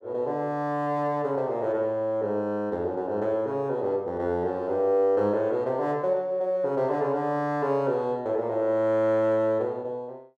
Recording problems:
none

